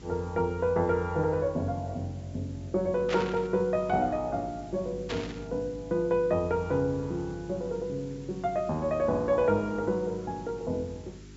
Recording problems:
treble missing; nothing above 8 kHz
hum; 50 Hz, harmonics up to 400 Hz, SNR 17 dB
hiss; slope 0 dB per octave, SNR 27 dB
static burst; at 3 s and at 5 s; peak -1 dB vs average level

